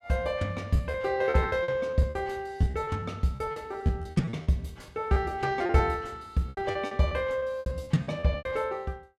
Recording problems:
lost packets; 16% of the sound replaced, filled with repeated pitch periods

